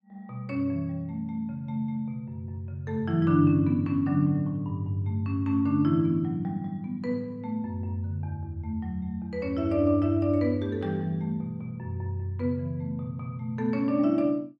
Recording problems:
none

